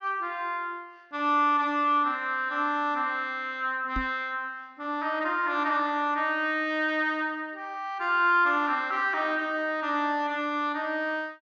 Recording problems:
treble cut off; nothing above 8 kHz
knock on the microphone; at 4 s; peak -2 dB vs average level

